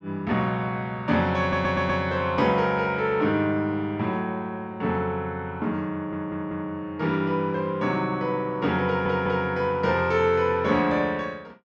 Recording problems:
audio stuttering; at 1.5 s, at 6 s and at 9 s

